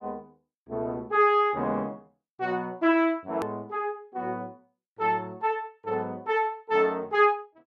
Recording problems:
edit click; at 3.5 s

